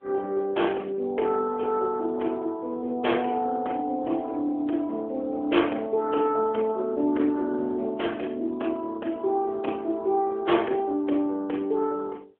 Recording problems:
phone line; 260 Hz to 3.4 kHz, AMR-NB

